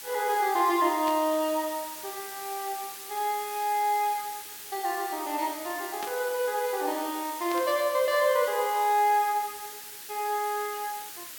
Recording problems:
background hiss; SNR 11 dB
static burst; at 1 s, at 6 s and at 7.5 s; peak -8 dB vs average level

